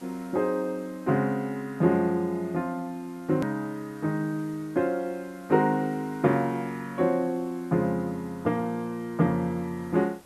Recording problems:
hiss; slope -4 dB per octave, SNR 26 dB
edit click; at 3.5 s

